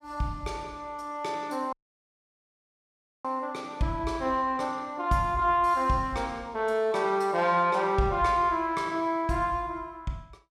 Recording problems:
audio cutting out; at 1.5 s for 1.5 s

